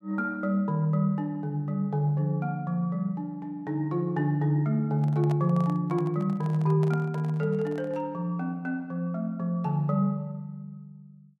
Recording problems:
microphone handling noise; from 5 to 8 s; peak -8 dB vs average level

